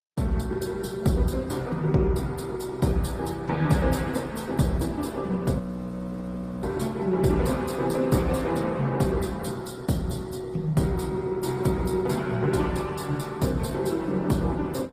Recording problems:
codec artefacts; Opus, then Opus, log-spectral distance 3 dB, nothing above 15.1 kHz
audio freezing; at 5.5 s for 1 s

